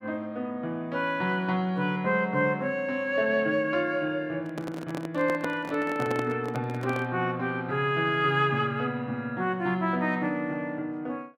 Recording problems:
microphone handling noise; from 4.5 to 7 s; peak -2 dB vs average level

